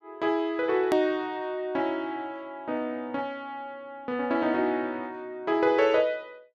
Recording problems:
edit click; at 1 s

